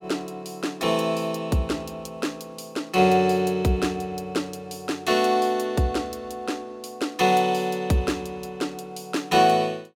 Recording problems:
none

